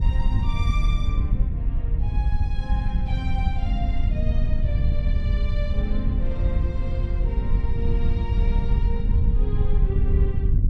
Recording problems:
wind noise; below 74 Hz, SNR -10 dB

